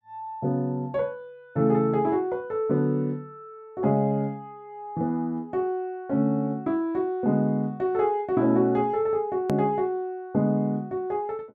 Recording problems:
edit click; at 9.5 s

